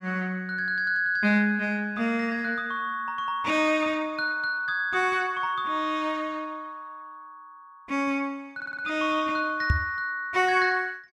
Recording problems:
audio stuttering; at 8.5 s
knock on the microphone; at 9.5 s; peak +6 dB vs average level

